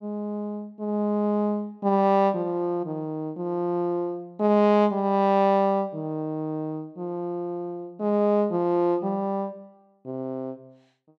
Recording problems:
none

